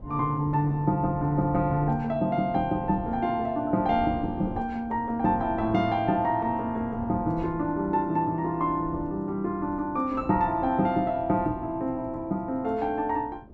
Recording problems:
wind noise; below 270 Hz, SNR 16 dB

